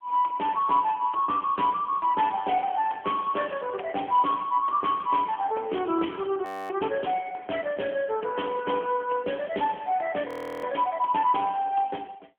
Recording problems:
telephone audio; 240 Hz to 3.3 kHz, AMR-NB
audio freezing; at 6.5 s and at 10 s

